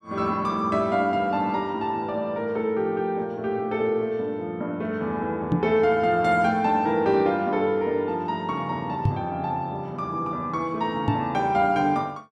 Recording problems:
knock on the microphone; at 5.5 s, at 9 s and at 11 s; peak +6 dB vs average level

